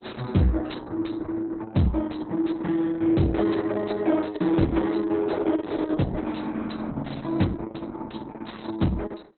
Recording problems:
lossy compression; MP2, then Opus, log-spectral distance 6 dB, nothing above 4.1 kHz
distorted audio; soft clipping, signal-to-distortion ratio 10 dB

